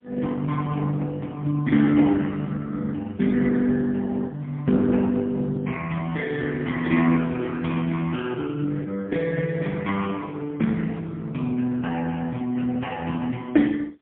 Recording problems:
phone line; 220 Hz to 3.6 kHz, AMR-NB, then MP3

